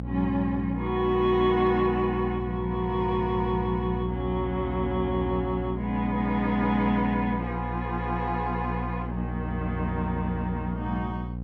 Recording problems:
hum; 60 Hz, harmonics up to 540 Hz, SNR 5 dB

